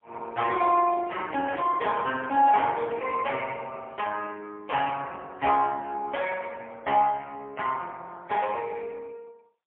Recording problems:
telephone audio; 300 Hz to 3.3 kHz, AMR-NB, then MP3

